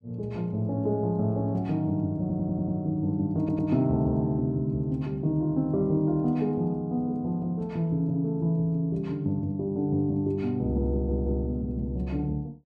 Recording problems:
audio stuttering; at 2 s, at 3.5 s and at 11 s

